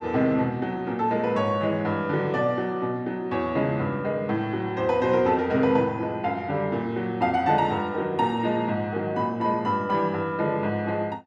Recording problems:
none

